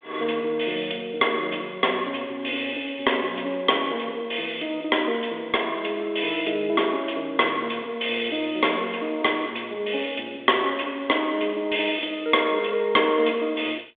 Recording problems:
phone line; 260 Hz to 3.6 kHz, G.726

